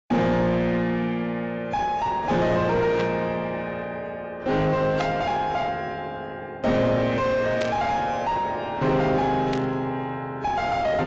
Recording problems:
lossy compression; AAC, log-spectral distance 2 dB
distortion; soft clipping, signal-to-distortion ratio 6 dB
static burst; 4 times, first at 3 s; peak -4 dB vs average level

